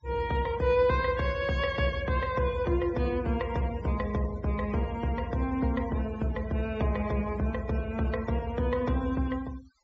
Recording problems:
treble cut off; nothing above 8 kHz
noise reduction artefacts; signal-to-artefact ratio 21 dB

